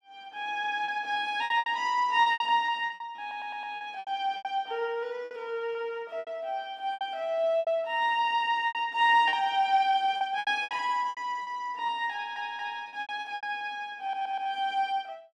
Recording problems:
lost packets; 13% of the sound replaced, filled with repeated pitch periods
audio stuttering; at 3 s, at 12 s and at 14 s

